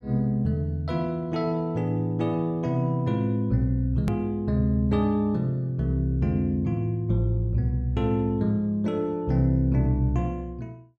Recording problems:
edit click; at 4 s

